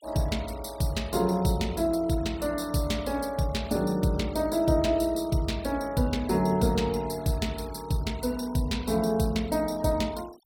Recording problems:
denoising artefacts; signal-to-artefact ratio 22 dB

